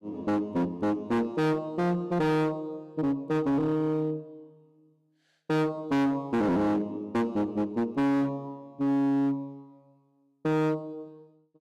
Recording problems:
distorted audio; hard clipping, signal-to-distortion ratio 6 dB

